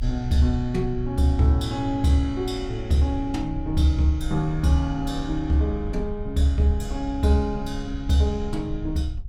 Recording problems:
rumble; below 66 Hz, SNR 11 dB

